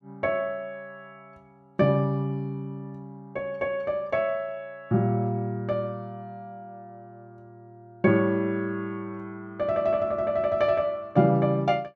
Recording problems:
none

